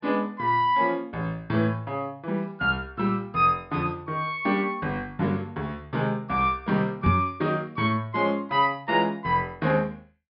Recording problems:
treble cut off; nothing above 5.5 kHz
knock on the microphone; at 7 s; peak +5 dB vs average level

